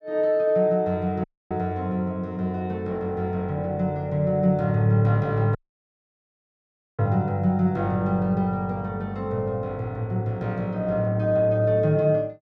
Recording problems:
audio cutting out; at 1 s and at 5.5 s for 1.5 s

